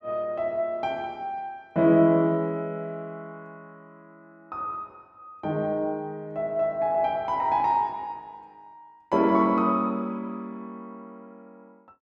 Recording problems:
none

